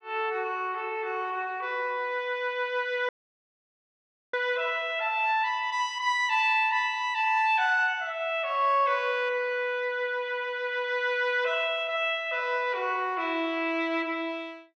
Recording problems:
dropout; at 3 s for 1 s

